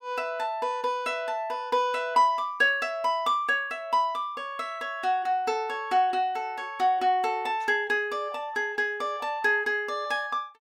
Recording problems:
none

